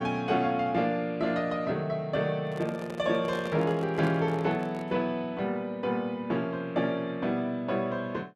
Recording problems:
microphone handling noise; from 2.5 to 5 s; peak -6 dB vs average level

